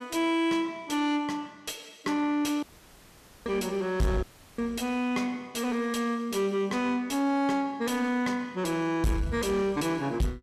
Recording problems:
distorted audio; soft clipping, signal-to-distortion ratio 6 dB
audio cutting out; at 2.5 s for 1 s and at 4 s

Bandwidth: 14.5 kHz